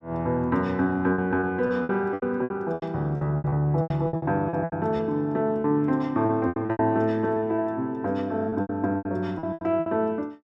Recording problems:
lost packets; 16% of the sound replaced, filled with repeated pitch periods

